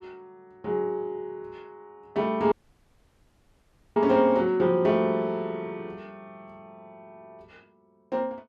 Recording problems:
audio cutting out; at 2.5 s for 1.5 s

